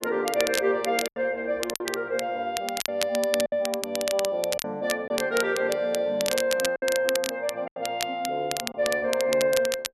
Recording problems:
crackling; vinyl, SNR 6 dB
lost packets; 5% of the sound replaced, filled with silence

